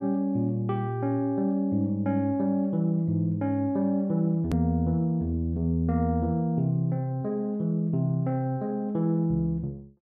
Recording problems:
hard cut with a click; at 4.5 s

